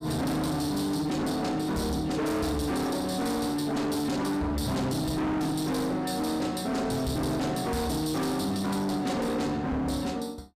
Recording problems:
distorted audio; hard clipping, uneven, signal-to-distortion ratio 7 dB

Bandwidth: 15 kHz